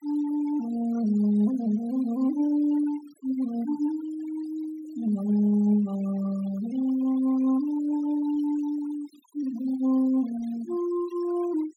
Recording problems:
denoising artefacts; signal-to-artefact ratio 22 dB

